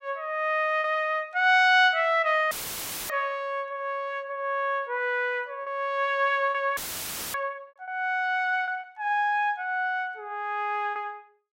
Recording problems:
lost packets; 3% of the sound replaced, filled with repeated pitch periods
audio cutting out; at 2.5 s for 0.5 s and at 7 s for 0.5 s; filled with static

